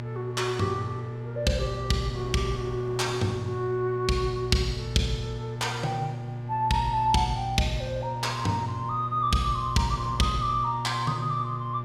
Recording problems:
electrical hum; 60 Hz, harmonics up to 840 Hz, SNR 7 dB
wind on the microphone; below 560 Hz, SNR 21 dB

